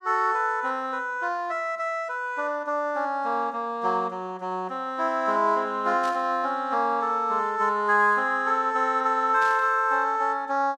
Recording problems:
burst of static; at 6 s and at 9.5 s; peak -12 dB vs average level

